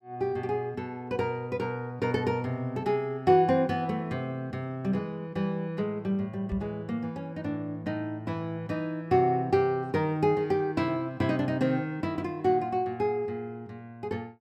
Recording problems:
microphone bump; at 6.5 s; peak -3 dB vs average level

